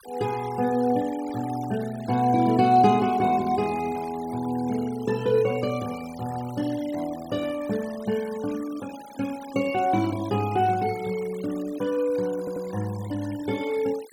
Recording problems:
denoising artefacts; signal-to-artefact ratio 19 dB
stutter; at 12 s

